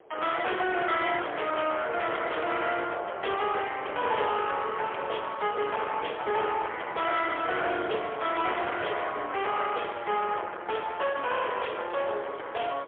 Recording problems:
phone line; 370 Hz to 3.4 kHz, AMR-NB, then MP3
distortion; soft clipping, signal-to-distortion ratio 8 dB
wind on the microphone; below 1.6 kHz, SNR 16 dB

